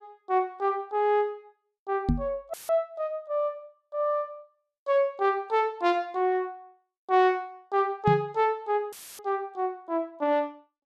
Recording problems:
knock on the microphone; at 2 s and at 8 s; peak +6 dB vs average level
audio cutting out; at 2.5 s and at 9 s; filled with static

